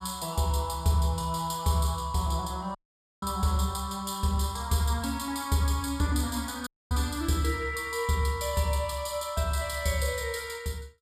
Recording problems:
dropout; at 3 s and at 6.5 s

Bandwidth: 15 kHz